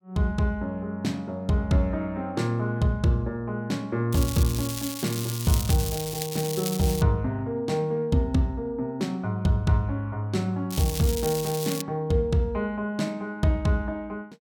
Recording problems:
crackle; from 4 to 7 s and from 11 to 12 s; loose cable, SNR 7 dB

